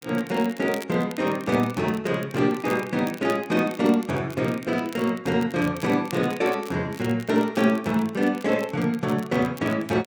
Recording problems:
crackling; vinyl, SNR 20 dB

